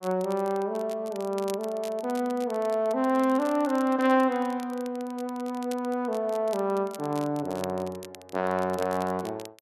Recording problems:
crackle; vinyl, SNR 20 dB

